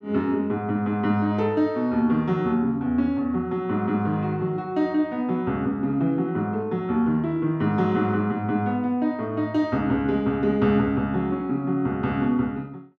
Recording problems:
none

